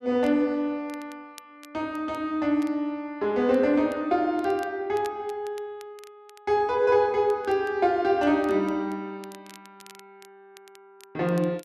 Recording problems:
crackle; vinyl, SNR 28 dB

